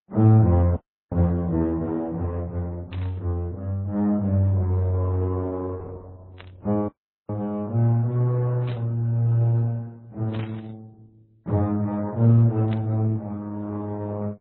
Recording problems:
lossy codec; Opus, then MP3, log-spectral distance 2 dB, nothing above 11.3 kHz
audio cutting out; at 1 s and at 7 s
static burst; 5 times, first at 3 s; peak -12 dB vs average level

